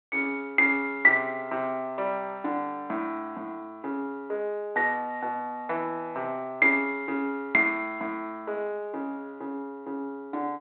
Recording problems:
telephone audio; 240 Hz to 3.8 kHz, G.726

